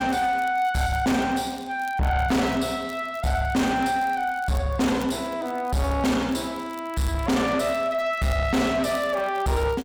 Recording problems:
distortion; soft clipping, signal-to-distortion ratio 7 dB
crackle; vinyl, SNR 25 dB

